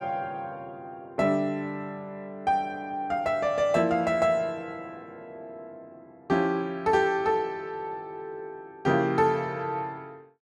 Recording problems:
none

